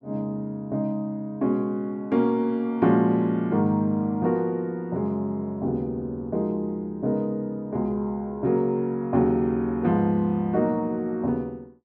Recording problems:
none

